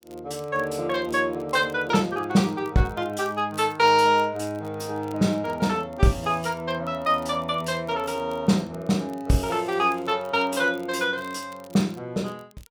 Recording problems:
crackling; vinyl, SNR 29 dB

